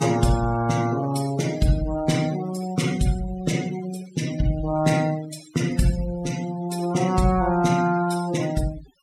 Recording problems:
noise reduction artefacts; signal-to-artefact ratio 16 dB

